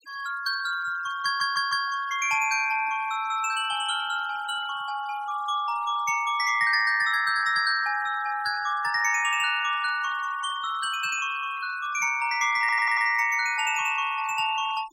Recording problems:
denoising artefacts; signal-to-artefact ratio 19 dB
audio stuttering; at 1.5 s and at 13 s

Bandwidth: 16 kHz